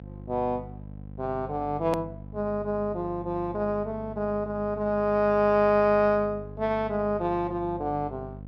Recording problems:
electrical hum; 50 Hz, harmonics up to 750 Hz, SNR 15 dB
edit click; at 2 s

